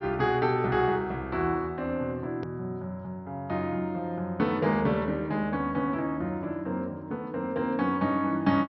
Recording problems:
treble missing; nothing above 5.8 kHz
edit click; at 2.5 s

